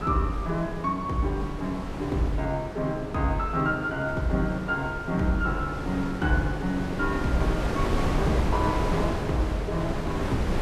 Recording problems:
wind noise; below 580 Hz, SNR 4 dB

